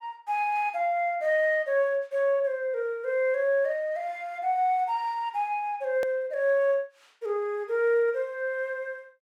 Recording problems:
edit click; at 6 s

